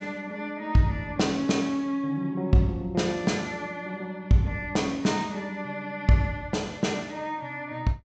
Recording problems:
treble missing; nothing above 8 kHz

